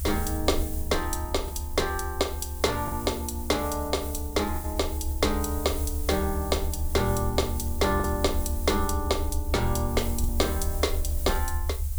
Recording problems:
hiss; SNR 10 dB
low-frequency rumble; below 76 Hz, SNR 4 dB
lost packets; 2% of the sound replaced, filled with the last packet

